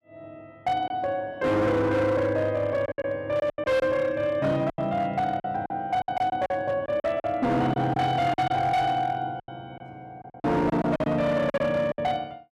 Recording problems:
distortion; hard clipping, signal-to-distortion ratio 11 dB
lost packets; 10% of the sound replaced, filled with silence

